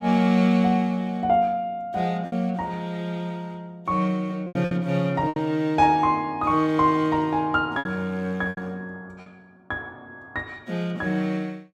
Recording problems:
lost packets; 4% of the sound replaced, filled with repeated pitch periods

